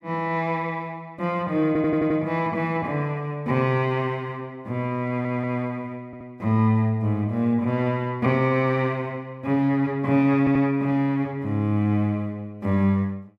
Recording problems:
audio stuttering; 4 times, first at 1.5 s

